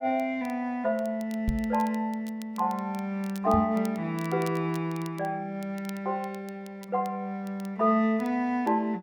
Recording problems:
crackling; vinyl, SNR 23 dB
microphone bump; at 1.5 s and at 3.5 s; peak +3 dB vs average level

